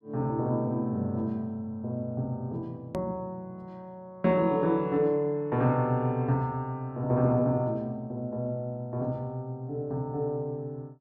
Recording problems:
hard cut with a click; at 3 s

